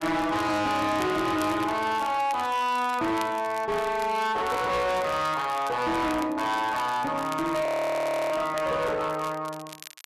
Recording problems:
distortion; hard clipping, uneven, signal-to-distortion ratio 7 dB
crackle; vinyl, SNR 19 dB
audio freezing; at 7.5 s for 0.5 s

